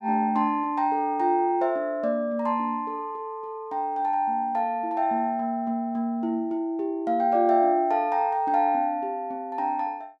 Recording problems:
none

